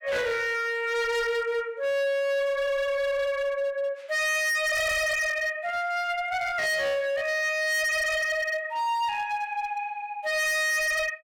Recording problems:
distorted audio; hard clipping, signal-to-distortion ratio 6 dB

